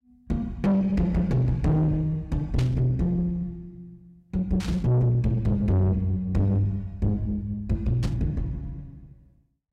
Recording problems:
distortion; soft clipping, signal-to-distortion ratio 6 dB
static burst; at 2.5 s, at 4.5 s and at 8 s; peak -8 dB vs average level

